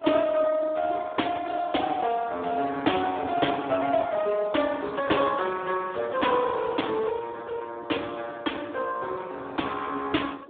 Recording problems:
phone line; 240 Hz to 3.6 kHz, Speex
wind noise; below 630 Hz, SNR 21 dB

